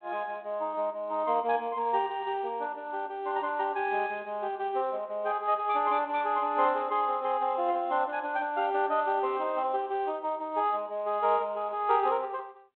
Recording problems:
phone line; 300 Hz to 3.5 kHz, G.726

